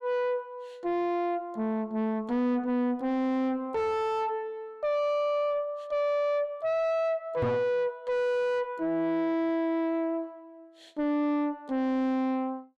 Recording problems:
distortion; soft clipping, signal-to-distortion ratio 5 dB
microphone bump; at 7.5 s; peak +6 dB vs average level

